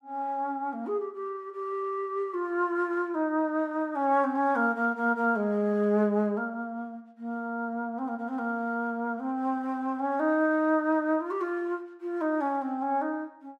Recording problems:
none

